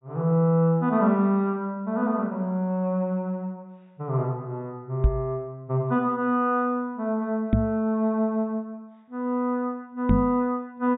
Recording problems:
treble cut off; nothing above 4 kHz
knock on the microphone; at 5 s, at 7.5 s and at 10 s; peak +8 dB vs average level

